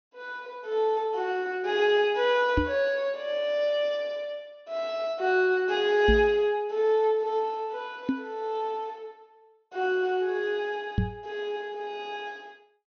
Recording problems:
low-pass filter; nothing above 6.4 kHz
knock on the microphone; 4 times, first at 2.5 s; peak +5 dB vs average level

